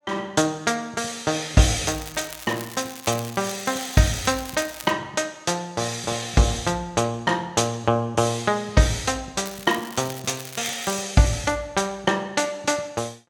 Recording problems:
crackle; from 2 to 5 s and from 9.5 to 11 s; loose cable, SNR 14 dB

